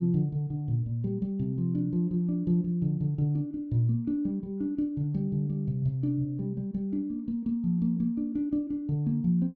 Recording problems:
none

